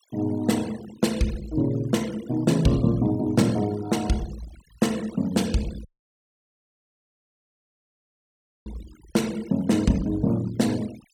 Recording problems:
noise reduction artefacts; signal-to-artefact ratio 19 dB
dropout; at 6 s for 3 s

